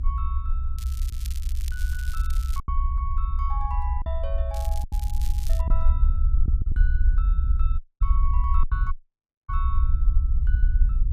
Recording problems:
low-frequency rumble; below 64 Hz, SNR -12 dB
packet loss; 3% of the sound replaced, filled with silence
crackle; from 1 to 2.5 s and from 4.5 to 5.5 s; loose cable, SNR 7 dB
dropout; at 8 s and at 9 s for 0.5 s

